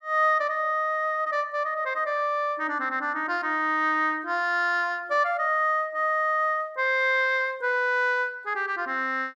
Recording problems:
none

